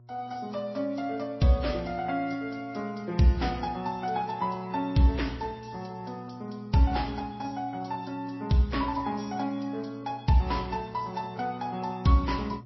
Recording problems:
codec artefacts; AAC, then MP3, log-spectral distance 5 dB, nothing above 5.7 kHz
hum; 60 Hz, harmonics up to 720 Hz, SNR 20 dB

